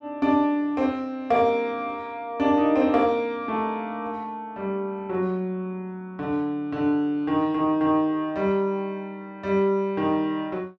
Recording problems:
none

